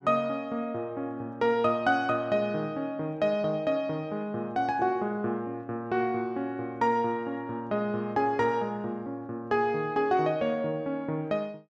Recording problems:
none

